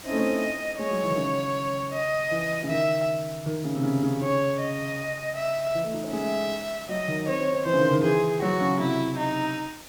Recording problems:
hiss; slope -1 dB per octave, SNR 17 dB

